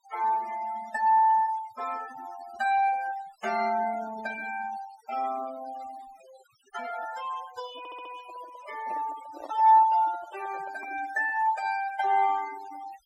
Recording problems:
noise reduction artefacts; signal-to-artefact ratio 18 dB
handling noise; from 7.5 to 11 s; peak -10 dB vs average level
audio stuttering; at 8 s

